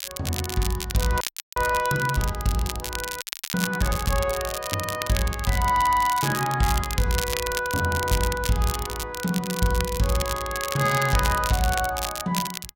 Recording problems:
crackling; vinyl, SNR 7 dB
frozen audio; at 1 s and at 3 s

